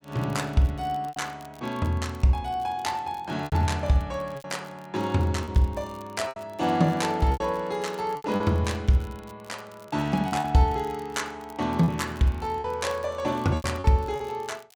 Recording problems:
crackling; vinyl, SNR 27 dB
packet loss; 6% of the sound replaced, filled with repeated pitch periods

